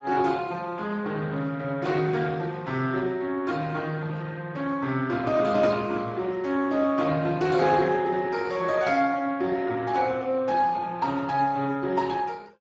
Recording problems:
lossy compression; Speex, log-spectral distance 3 dB, nothing above 7.3 kHz

